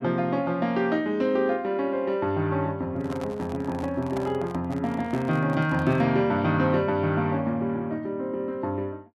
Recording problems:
microphone handling noise; from 3 to 6 s; peak -6 dB vs average level

